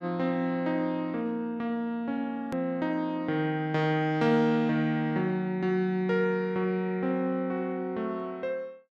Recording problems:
edit click; at 2.5 s

